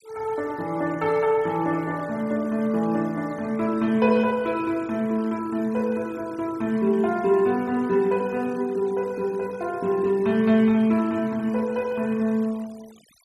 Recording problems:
noise reduction artefacts; signal-to-artefact ratio 25 dB

